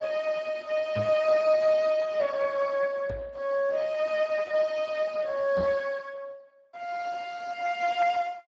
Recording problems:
lossy compression; Speex, log-spectral distance 3 dB
microphone bump; at 1 s, at 3 s and at 5.5 s; peak -4 dB vs average level

